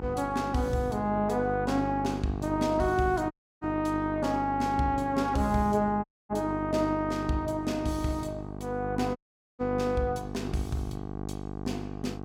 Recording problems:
hum; 50 Hz, harmonics up to 1.3 kHz, SNR 8 dB
audio cutting out; at 3.5 s, at 6 s and at 9 s

